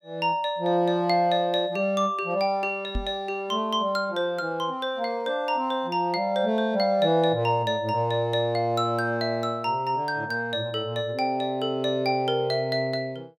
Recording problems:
knock on the microphone; at 3 s; peak -2 dB vs average level

